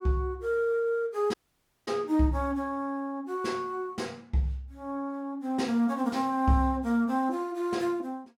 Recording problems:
audio cutting out; at 1.5 s for 0.5 s

